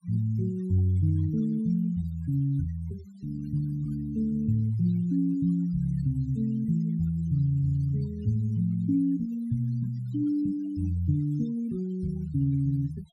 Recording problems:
noise reduction artefacts; signal-to-artefact ratio 26 dB

